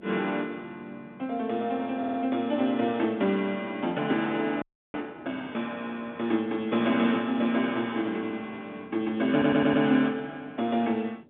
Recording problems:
phone line; 170 Hz to 3.6 kHz, G.711
wind on the microphone; below 440 Hz, SNR 23 dB
stutter; at 2 s and at 9.5 s
audio freezing; at 4.5 s

